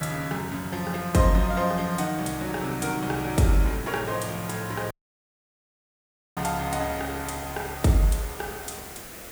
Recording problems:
hiss; slope -4 dB per octave, SNR 13 dB
dropout; at 5 s for 1.5 s

